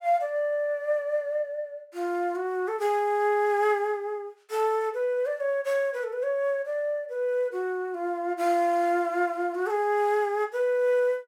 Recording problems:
none

